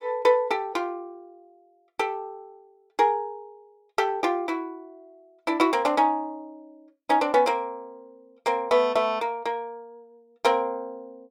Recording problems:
none

